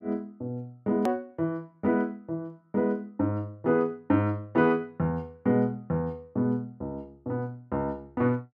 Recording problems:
edit click; at 1 s

